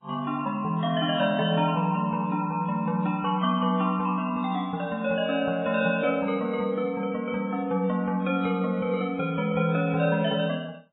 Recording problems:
lossy codec; MP3, then AAC, log-spectral distance 3 dB

